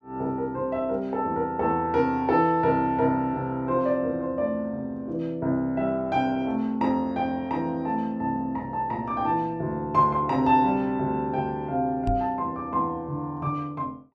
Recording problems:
microphone bump; at 12 s; peak 0 dB vs average level

